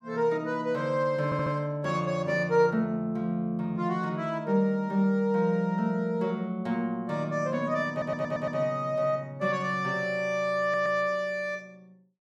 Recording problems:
stutter; at 1.5 s, at 8 s and at 11 s

